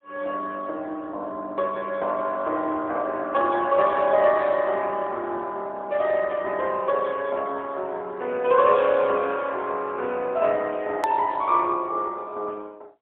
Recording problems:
phone line; 280 Hz to 3.6 kHz, AMR-NB, then MP3
edit click; at 11 s

